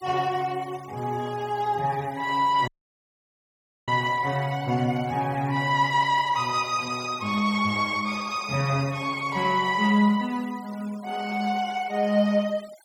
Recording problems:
noise reduction artefacts; signal-to-artefact ratio 21 dB
dropout; at 2.5 s for 1 s

